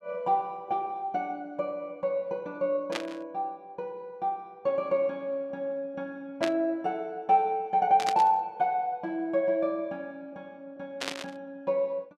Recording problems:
static burst; 4 times, first at 3 s; peak +1 dB vs average level

